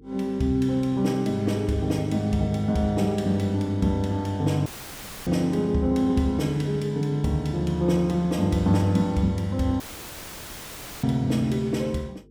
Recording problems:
hum; 50 Hz, harmonics up to 450 Hz, SNR 27 dB
audio cutting out; at 4.5 s for 0.5 s and at 10 s for 1 s; filled with static

